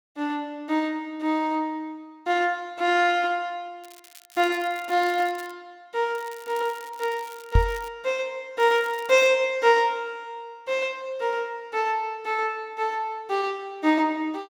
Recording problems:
crackle; from 4 to 5.5 s, from 6 to 8 s and at 8.5 s; loose cable, SNR 22 dB
microphone thump; at 7.5 s; peak +8 dB vs average level

